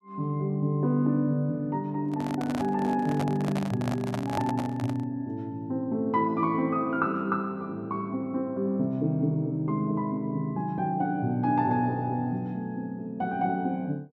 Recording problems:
microphone handling noise; from 2 to 5 s; peak -1 dB vs average level

